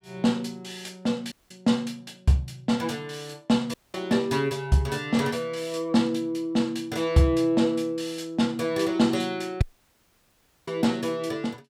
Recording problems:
dropout; at 1.5 s, at 3.5 s and at 9.5 s for 1 s

